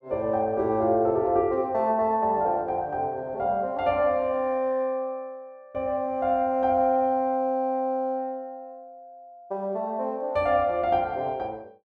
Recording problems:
none

